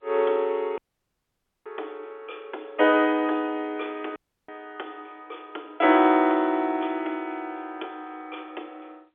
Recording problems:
phone line; 260 Hz to 3.5 kHz, G.711
audio cutting out; at 1 s for 1 s and at 4 s

